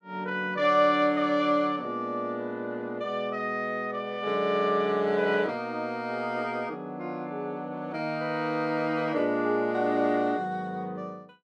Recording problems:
none

